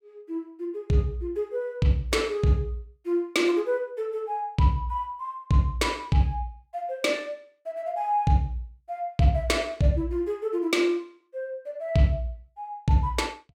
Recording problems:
none

